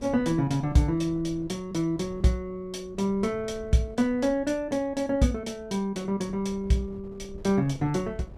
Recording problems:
wind noise; below 200 Hz, SNR 20 dB

